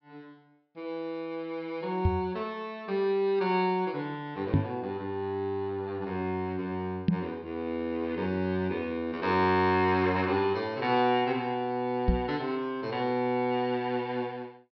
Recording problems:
treble cut off; nothing above 5.5 kHz
microphone thump; 4 times, first at 2 s; peak +9 dB vs average level

